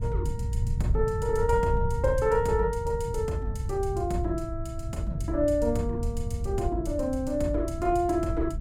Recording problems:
rumble; below 110 Hz, SNR 9 dB
wind on the microphone; below 98 Hz, SNR 8 dB

